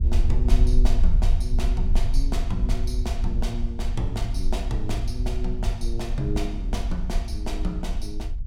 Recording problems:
rumble; below 50 Hz, strongest tone 20 Hz, SNR -5 dB

